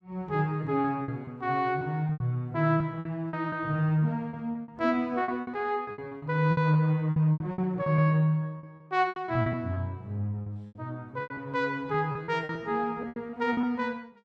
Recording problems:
lost packets; 14% of the sound replaced, filled with repeated pitch periods

